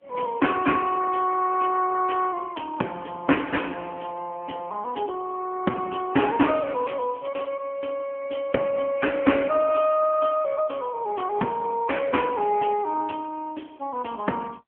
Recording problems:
phone line; 220 Hz to 3.2 kHz, AMR-NB
crackling; at 6.5 s; loose cable, SNR 28 dB

